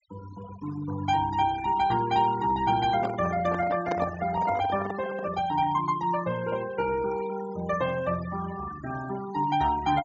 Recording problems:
low-pass filter; nothing above 8 kHz
denoising artefacts; signal-to-artefact ratio 14 dB
handling noise; from 3 to 5.5 s; peak 0 dB vs average level

